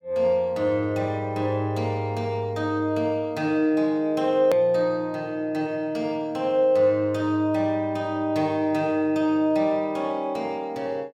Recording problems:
click at an edit; at 4.5 s

